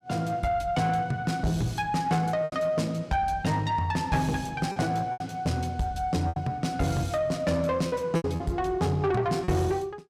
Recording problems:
distortion; soft clipping, signal-to-distortion ratio 11 dB
packet loss; 5% of the sound replaced, filled with repeated pitch periods

